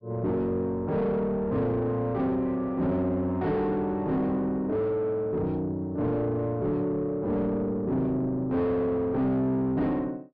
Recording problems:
low-pass filter; nothing above 5.5 kHz
distorted audio; soft clipping, signal-to-distortion ratio 7 dB

